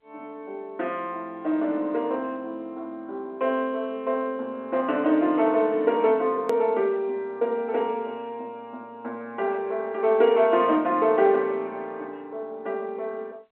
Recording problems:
phone line; 260 Hz to 4 kHz, G.711
click at an edit; at 6.5 s

